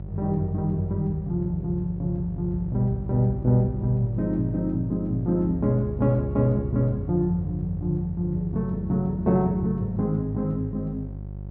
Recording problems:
electrical hum; 50 Hz, harmonics up to 550 Hz, SNR 10 dB

